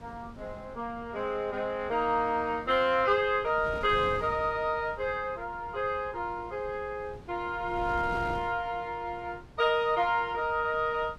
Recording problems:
wind on the microphone; below 410 Hz, SNR 17 dB

